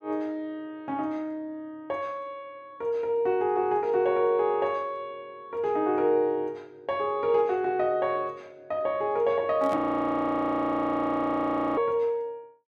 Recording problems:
microphone handling noise; at 9.5 s; peak -7 dB vs average level
audio freezing; at 10 s for 2 s

